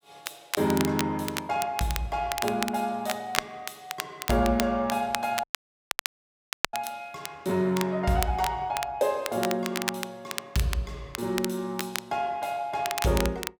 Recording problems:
crackling; vinyl, SNR 6 dB
dropout; at 5.5 s for 1.5 s

